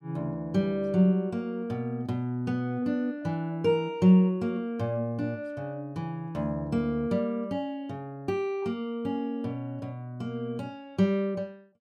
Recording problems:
none

